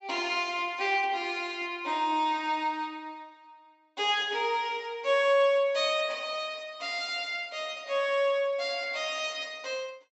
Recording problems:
treble cut off; nothing above 7.8 kHz

